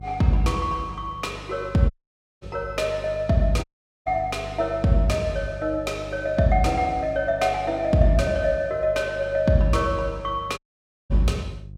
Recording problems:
electrical hum; 50 Hz, harmonics up to 350 Hz, SNR 16 dB
audio cutting out; at 2 s for 0.5 s, at 3.5 s and at 11 s for 0.5 s

